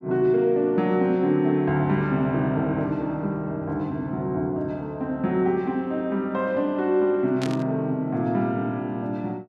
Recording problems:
burst of static; at 7.5 s; peak -5 dB vs average level

